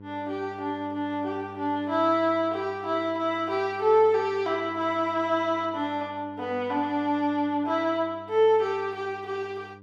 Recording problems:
electrical hum; 50 Hz, harmonics up to 1 kHz, SNR 21 dB

